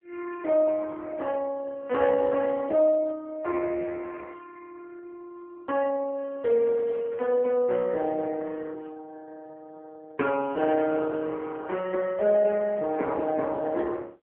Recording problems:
telephone audio; 300 Hz to 2.8 kHz, AMR-NB

